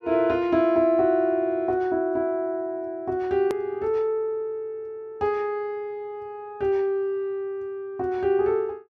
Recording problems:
edit click; at 3.5 s

